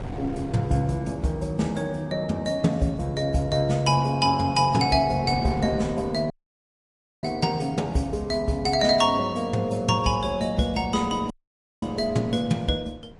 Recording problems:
lossy codec; MP3, log-spectral distance 2 dB
wind on the microphone; below 430 Hz, SNR 18 dB
audio cutting out; at 6.5 s for 1 s and at 11 s for 0.5 s

